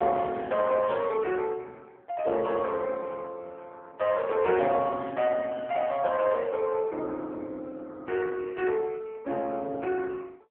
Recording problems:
telephone audio; 260 Hz to 3.4 kHz, AMR-NB

